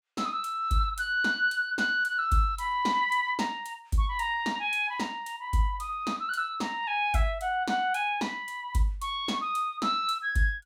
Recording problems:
none

